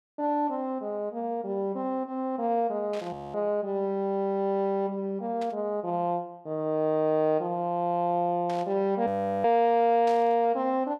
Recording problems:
static burst; 4 times, first at 3 s; peak -12 dB vs average level
audio freezing; at 3 s and at 9 s

